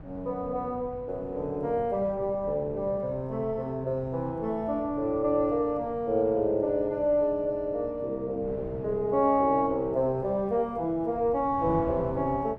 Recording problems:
wind noise; below 280 Hz, SNR 17 dB

